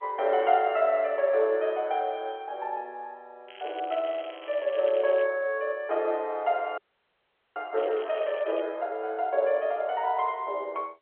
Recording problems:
telephone audio; 370 Hz to 3.5 kHz, G.711
crackle; from 3.5 to 5.5 s and at 8 s; loose cable, SNR 20 dB
audio freezing; at 7 s for 1 s

